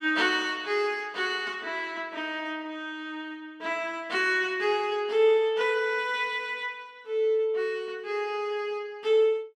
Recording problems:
none

